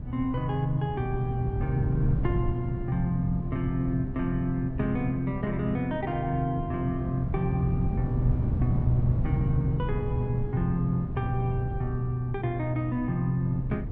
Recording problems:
wind on the microphone; below 160 Hz, SNR 4 dB

